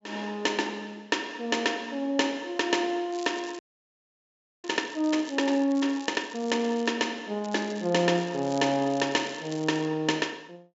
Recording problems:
treble cut off; nothing above 8 kHz
crackling; from 3 to 7 s and from 7.5 to 10 s; loose cable, SNR 19 dB
frozen audio; at 3.5 s for 1 s

